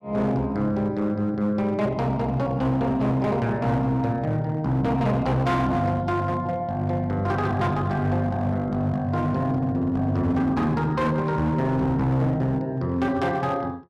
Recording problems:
distortion; hard clipping, uneven, signal-to-distortion ratio 12 dB

